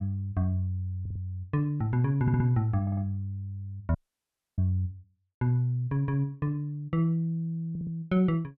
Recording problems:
stutter; 4 times, first at 1 s
dropout; at 4 s for 0.5 s

